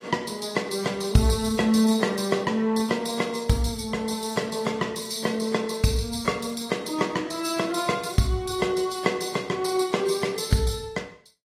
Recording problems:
lossy codec; AAC, log-spectral distance 4 dB

